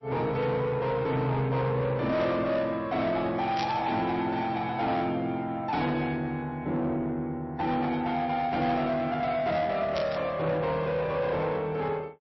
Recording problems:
lossy compression; MP3, log-spectral distance 2 dB, nothing above 5.7 kHz
distortion; soft clipping, signal-to-distortion ratio 11 dB
static burst; at 3.5 s and at 10 s; peak -3 dB vs average level

